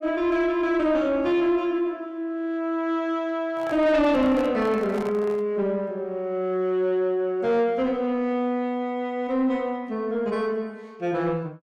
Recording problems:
distorted audio; soft clipping, signal-to-distortion ratio 10 dB
microphone handling noise; from 3.5 to 5.5 s; peak -7 dB vs average level

